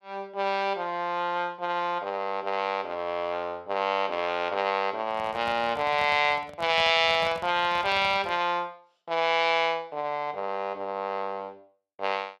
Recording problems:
microphone handling noise; from 5 to 8.5 s; peak -8 dB vs average level

